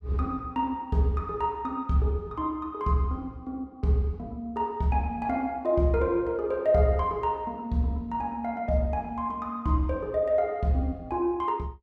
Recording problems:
none

